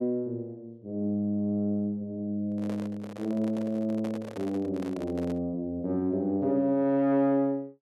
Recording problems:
handling noise; from 2.5 to 5.5 s; peak -7 dB vs average level

